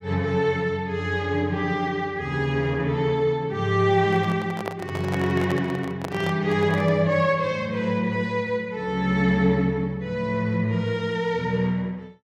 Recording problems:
microphone handling noise; from 4 to 7 s; peak -2 dB vs average level

